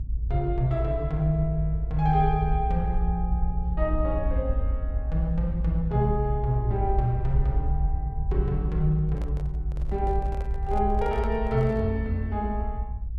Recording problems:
rumble; below 62 Hz, strongest tone 54 Hz, SNR 1 dB
microphone handling noise; from 9 to 12 s; peak -9 dB vs average level

